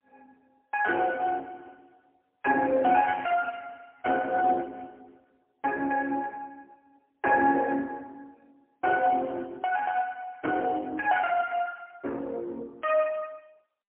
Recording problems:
telephone audio; 240 Hz to 2.9 kHz, AMR-NB, then MP3

